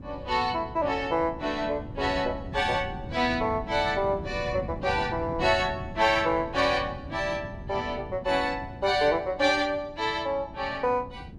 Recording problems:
wind noise; below 230 Hz, SNR 13 dB

